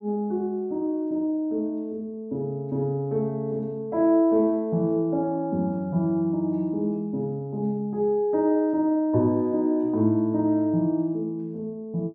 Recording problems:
none

